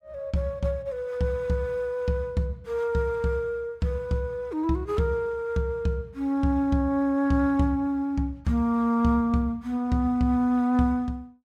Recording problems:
none

